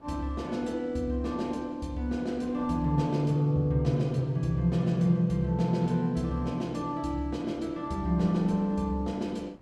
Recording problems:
wind noise; below 640 Hz, SNR 26 dB

